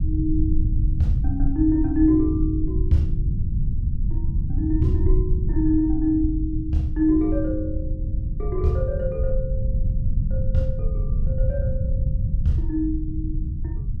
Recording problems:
low-frequency rumble; below 94 Hz, SNR 1 dB

